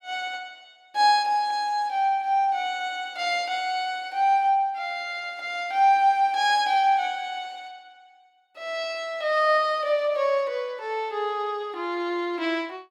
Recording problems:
none

